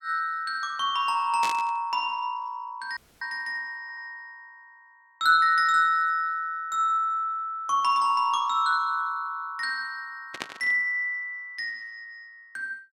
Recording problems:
burst of static; at 1.5 s and at 10 s; peak -2 dB vs average level
audio cutting out; at 3 s
stutter; at 4 s

